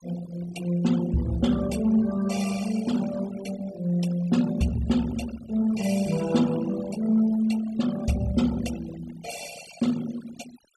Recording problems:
noise reduction artefacts; signal-to-artefact ratio 17 dB

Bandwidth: 14 kHz